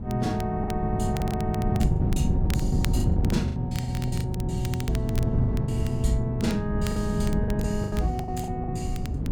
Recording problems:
wind on the microphone; below 170 Hz, SNR 0 dB
crackle; vinyl, SNR 15 dB
lost packets; 12% of the sound replaced, filled with the last packet

